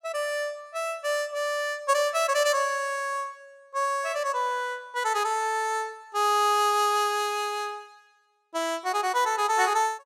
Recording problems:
none

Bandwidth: 16.5 kHz